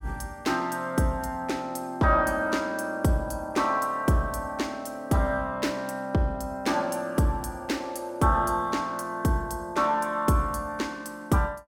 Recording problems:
none

